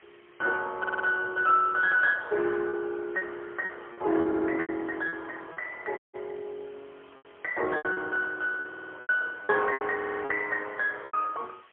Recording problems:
phone line; 280 Hz to 3 kHz, AMR-NB, then MP3
hiss; SNR 29 dB
lost packets; 9% of the sound replaced, filled with repeated pitch periods
stutter; 4 times, first at 1 s
audio cutting out; at 6 s

